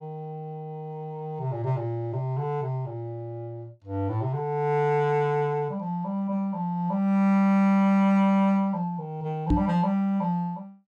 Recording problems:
microphone thump; at 9.5 s; peak +5 dB vs average level

